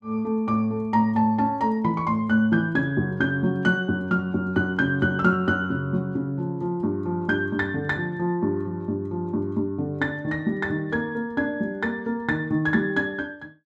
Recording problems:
none

